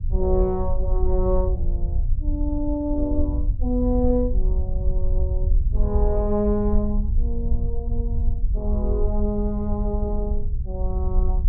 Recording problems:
low-frequency rumble; below 62 Hz, SNR -1 dB

